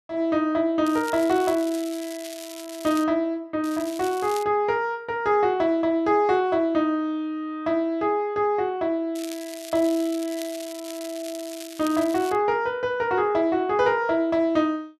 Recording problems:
crackling; from 1 to 3 s, at 3.5 s and from 9 to 12 s; loose cable, SNR 16 dB

